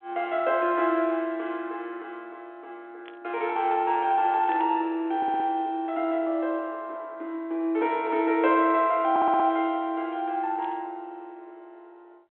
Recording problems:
phone line; 260 Hz to 3.5 kHz, G.726
static burst; at 3 s, at 4.5 s and at 11 s; peak -14 dB vs average level
audio stuttering; at 5 s and at 9 s

